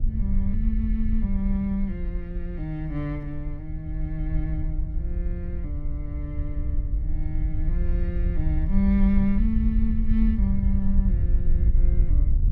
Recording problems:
wind noise; below 60 Hz, SNR -2 dB

